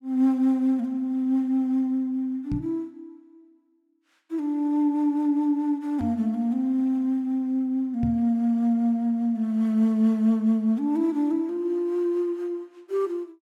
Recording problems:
knock on the microphone; at 2.5 s, at 6 s and at 8 s; peak -1 dB vs average level

